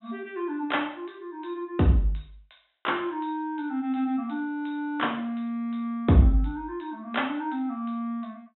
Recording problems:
low-pass filter; nothing above 3.9 kHz

